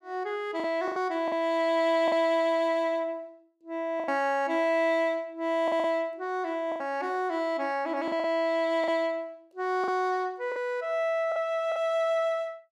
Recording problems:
packet loss; 6% of the sound replaced, filled with the last packet

